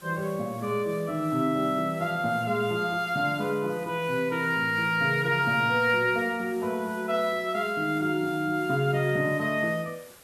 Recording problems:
background hiss; slope -2 dB per octave, SNR 23 dB

